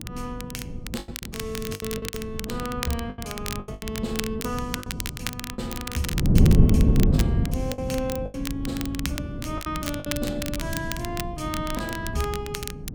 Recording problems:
wind noise; below 200 Hz, SNR -5 dB
crackling; vinyl, SNR 3 dB
packet loss; 8% of the sound replaced, filled with the last packet

